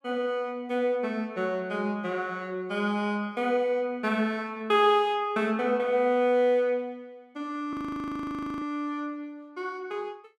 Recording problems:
audio freezing; at 7.5 s for 1 s

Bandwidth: 14.5 kHz